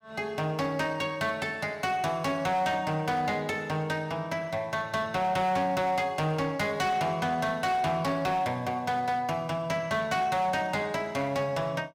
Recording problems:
distortion; hard clipping, signal-to-distortion ratio 11 dB

